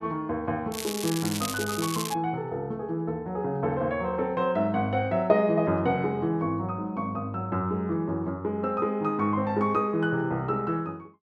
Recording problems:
crackling; from 0.5 to 2 s; loose cable, SNR 7 dB

